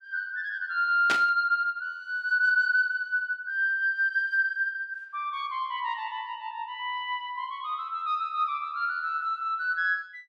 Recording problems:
static burst; at 1 s; peak +3 dB vs average level

